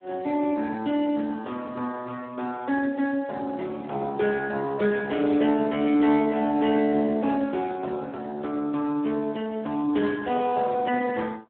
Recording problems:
phone line; 170 Hz to 3.7 kHz, Speex

